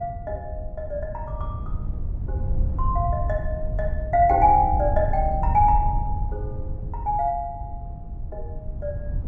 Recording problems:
wind noise; below 88 Hz, SNR 6 dB

